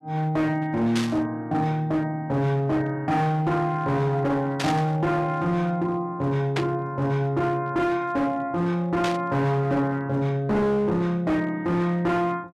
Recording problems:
distorted audio; hard clipping, signal-to-distortion ratio 10 dB
burst of static; 4 times, first at 1 s; peak 0 dB vs average level

